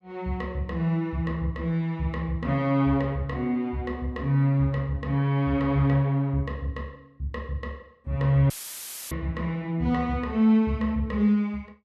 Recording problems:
dropout; at 8.5 s for 0.5 s; filled with static

